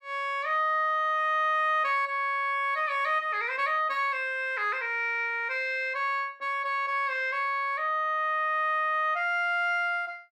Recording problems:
none

